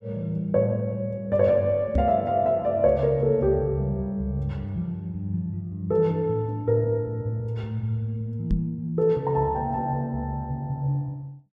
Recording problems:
microphone bump; at 2 s and at 8.5 s; peak +4 dB vs average level

